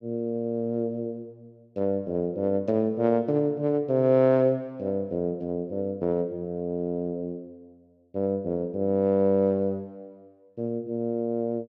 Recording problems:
none

